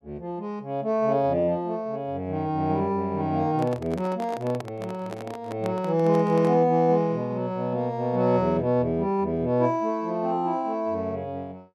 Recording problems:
handling noise; from 3.5 to 6.5 s; peak -6 dB vs average level

